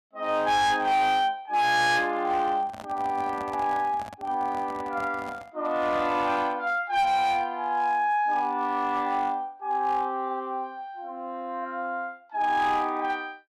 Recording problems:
distorted audio; hard clipping, uneven, signal-to-distortion ratio 11 dB
microphone handling noise; from 2.5 to 5.5 s; peak -10 dB vs average level

